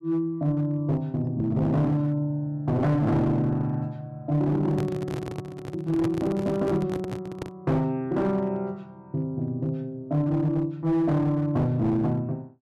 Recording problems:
distortion; hard clipping, uneven, signal-to-distortion ratio 11 dB
microphone handling noise; from 4.5 to 7.5 s; peak 0 dB vs average level

